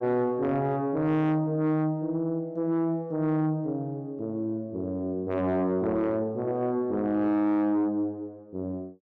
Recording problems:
distortion; soft clipping, signal-to-distortion ratio 11 dB

